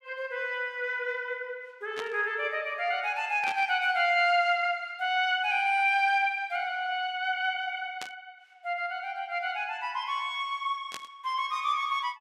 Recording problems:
static burst; 4 times, first at 2 s; peak -5 dB vs average level

